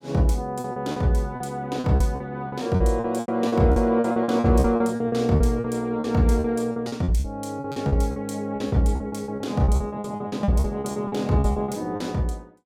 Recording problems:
packet loss; 18% of the sound replaced, filled with repeated pitch periods

